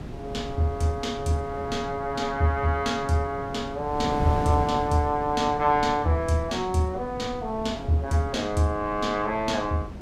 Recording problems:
wind noise; below 340 Hz, SNR 11 dB

